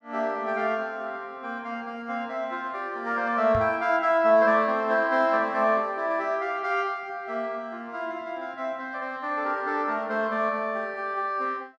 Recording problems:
knock on the microphone; at 3.5 s; peak -2 dB vs average level

